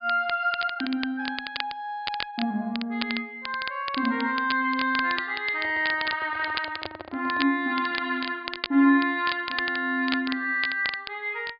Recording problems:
treble missing; nothing above 5 kHz
crackle; vinyl, SNR 10 dB
microphone handling noise; from 5.5 to 7.5 s; peak -5 dB vs average level

